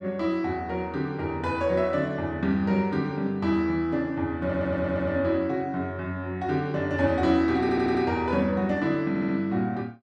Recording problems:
stutter; at 4.5 s, at 7.5 s and at 9 s

